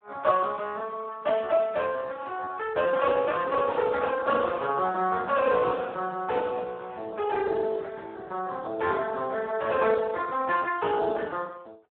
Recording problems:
phone line; 190 Hz to 3.7 kHz, Speex

